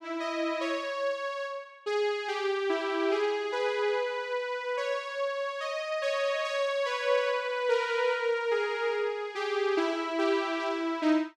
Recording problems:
none

